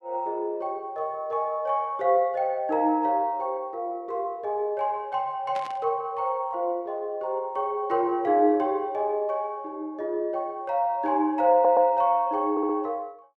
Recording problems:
burst of static; at 5.5 s; peak -11 dB vs average level
stutter; at 12 s and at 13 s

